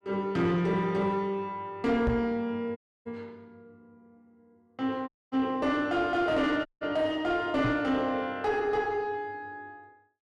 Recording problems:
distortion; soft clipping, signal-to-distortion ratio 11 dB
microphone bump; at 2 s and at 7.5 s; peak +4 dB vs average level
dropout; at 3 s, at 5 s and at 6.5 s

